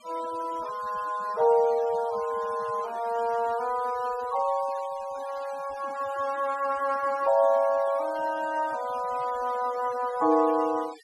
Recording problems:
noise reduction artefacts; signal-to-artefact ratio 20 dB

